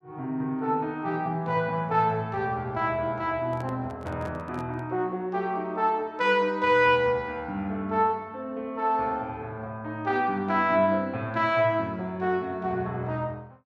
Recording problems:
microphone handling noise; from 3.5 to 5 s; peak -11 dB vs average level

